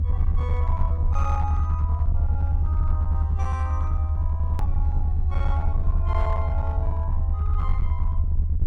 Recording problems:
distortion; hard clipping, uneven, signal-to-distortion ratio 11 dB
rumble; below 78 Hz, SNR -11 dB
edit click; at 4.5 s

